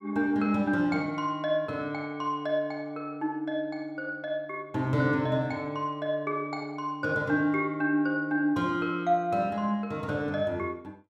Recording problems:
none

